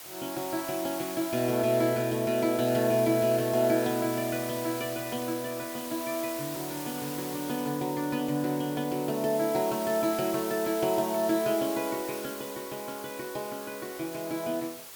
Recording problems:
hiss; slope -1 dB per octave, SNR 10 dB

